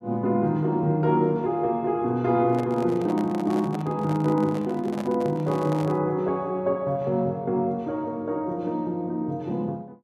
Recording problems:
handling noise; from 2.5 to 6 s; peak -7 dB vs average level

